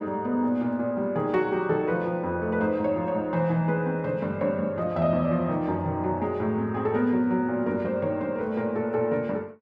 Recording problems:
none

